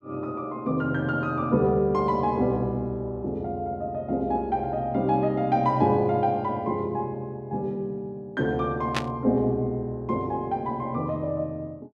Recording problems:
static burst; at 9 s; peak +3 dB vs average level

